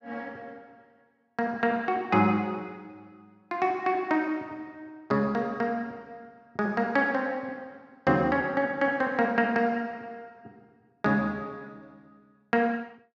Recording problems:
none

